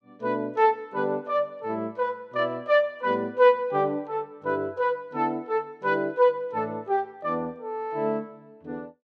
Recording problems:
none

